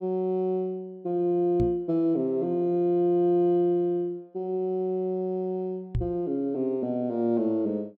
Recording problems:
microphone bump; at 1.5 s and at 6 s; peak +1 dB vs average level

